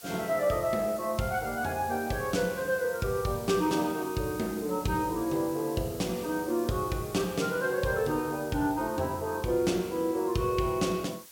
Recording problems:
background hiss; slope +2 dB per octave, SNR 16 dB

